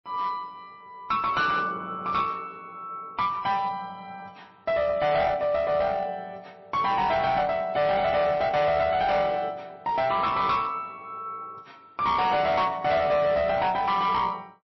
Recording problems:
lossy compression; MP3, log-spectral distance 2 dB, nothing above 5.7 kHz
distortion; hard clipping, uneven, signal-to-distortion ratio 10 dB

